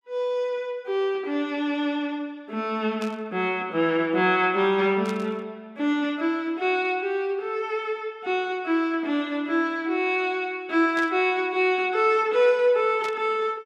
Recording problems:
static burst; 4 times, first at 3 s; peak -9 dB vs average level

